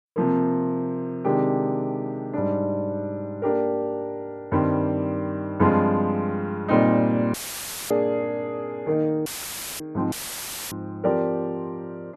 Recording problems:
audio cutting out; at 7.5 s for 0.5 s, at 9.5 s for 0.5 s and at 10 s for 0.5 s; filled with static

